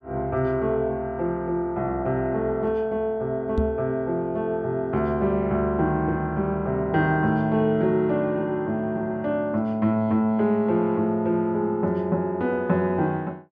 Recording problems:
microphone bump; at 3.5 s; peak +3 dB vs average level

